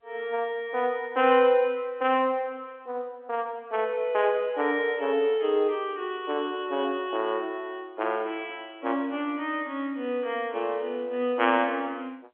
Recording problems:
telephone audio; 240 Hz to 3.4 kHz, G.711

